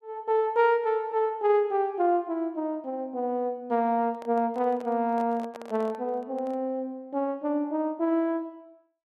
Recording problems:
microphone handling noise; from 4 to 6.5 s; peak -11 dB vs average level

